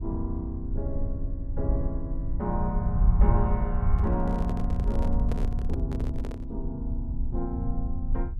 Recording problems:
rumble; below 72 Hz, SNR -4 dB
handling noise; from 4 to 6.5 s; peak 0 dB vs average level

